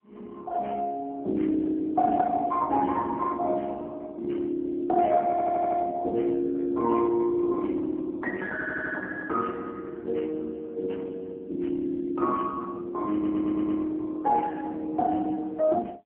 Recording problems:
telephone audio; 240 Hz to 2.1 kHz, AMR-NB
audio stuttering; at 5.5 s, at 8.5 s and at 13 s

